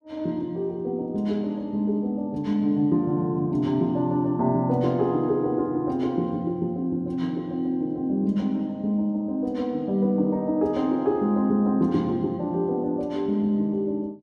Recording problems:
none

